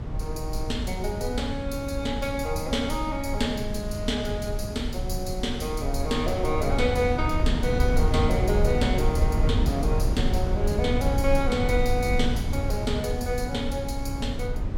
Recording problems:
low-frequency rumble; below 110 Hz, SNR 1 dB

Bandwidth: 17.5 kHz